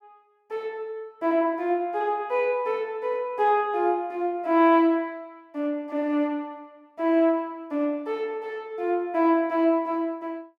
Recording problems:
none

